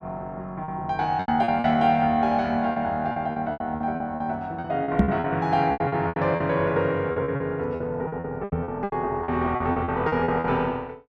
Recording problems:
packet loss; 15% of the sound replaced, filled with repeated pitch periods
microphone bump; at 5 s and at 8.5 s; peak +10 dB vs average level

